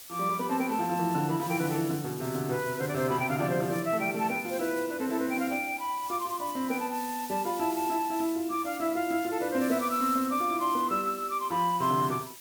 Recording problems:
hiss; slope +1 dB per octave, SNR 13 dB

